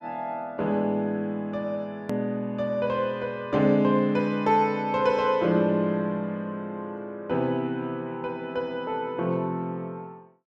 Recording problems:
edit click; at 2 s

